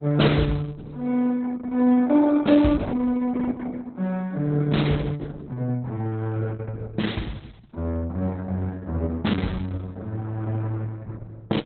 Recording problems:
lossy compression; Opus, log-spectral distance 3 dB, nothing above 4.1 kHz

